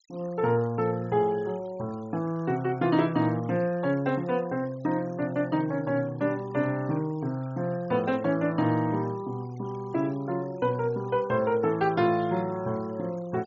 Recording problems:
treble cut off; nothing above 7.2 kHz
denoising artefacts; signal-to-artefact ratio 25 dB

